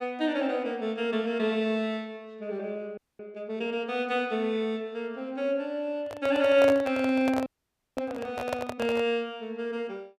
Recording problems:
audio freezing; at 3 s and at 7.5 s for 0.5 s
microphone handling noise; from 6 to 9 s; peak +1 dB vs average level

